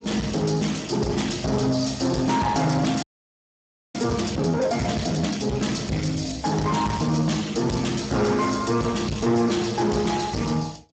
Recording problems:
lossy codec; Speex, log-spectral distance 7 dB, nothing above 7.6 kHz
distortion; soft clipping, signal-to-distortion ratio 7 dB
frozen audio; at 3 s for 1 s

